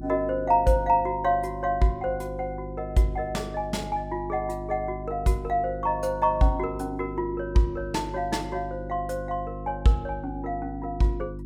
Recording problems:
electrical hum; 50 Hz, harmonics up to 350 Hz, SNR 11 dB

